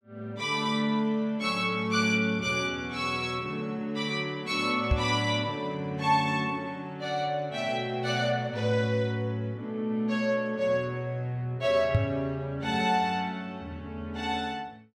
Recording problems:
knock on the microphone; at 5 s and at 12 s; peak +8 dB vs average level

